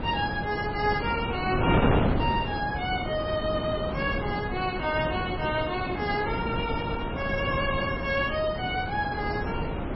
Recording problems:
codec artefacts; MP3, log-spectral distance 3 dB, nothing above 5.5 kHz
wind noise; below 570 Hz, SNR 2 dB

